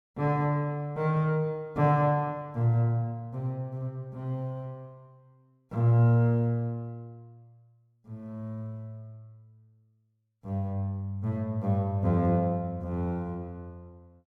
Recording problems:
none

